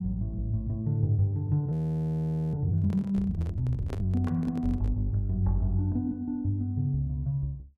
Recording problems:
audio freezing; at 1.5 s for 1 s
microphone handling noise; from 3 to 5 s; peak -6 dB vs average level

